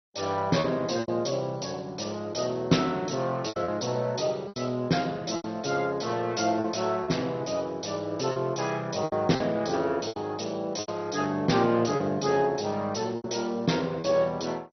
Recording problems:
codec artefacts; MP2, log-spectral distance 5 dB, nothing above 6 kHz
lost packets; 7% of the sound replaced, filled with repeated pitch periods

